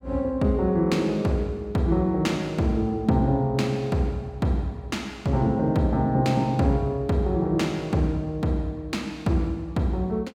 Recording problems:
none

